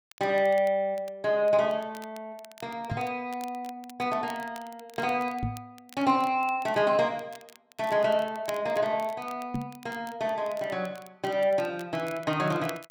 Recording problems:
crackling; vinyl, SNR 23 dB
microphone bump; at 3 s, at 5.5 s and at 9.5 s; peak +1 dB vs average level

